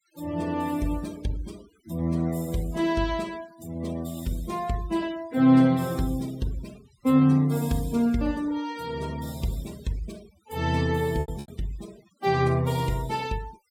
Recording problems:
denoising artefacts; signal-to-artefact ratio 22 dB
lost packets; 1.3% of the sound replaced, filled with repeated pitch periods

